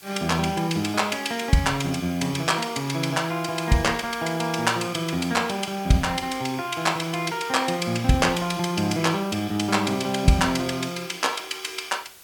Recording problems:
hiss; slope 0 dB per octave, SNR 21 dB

